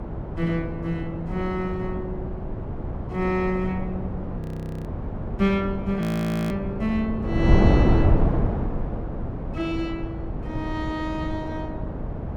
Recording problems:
wind on the microphone; below 270 Hz, SNR 0 dB
audio freezing; at 4.5 s and at 6 s

